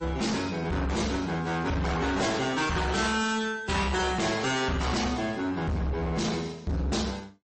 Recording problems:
codec artefacts; AAC, then MP3, log-spectral distance 4 dB, nothing above 8.2 kHz
distorted audio; soft clipping, signal-to-distortion ratio 6 dB

